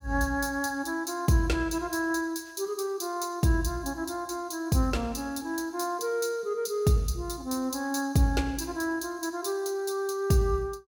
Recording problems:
none

